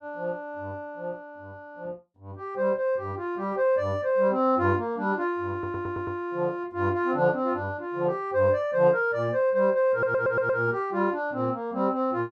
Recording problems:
audio stuttering; at 5.5 s and at 10 s

